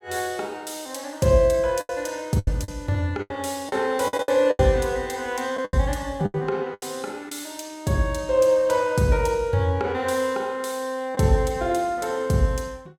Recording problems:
packet loss; 6% of the sound replaced, filled with the last packet

